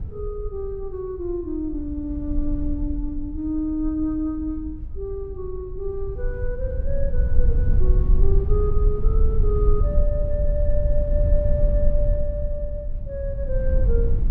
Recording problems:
rumble; below 58 Hz, SNR -4 dB

